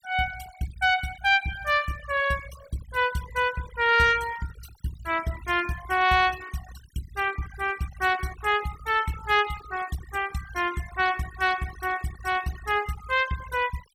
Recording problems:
denoising artefacts; signal-to-artefact ratio 16 dB

